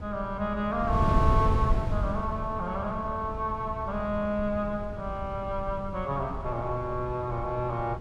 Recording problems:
wind noise; below 130 Hz, SNR 3 dB

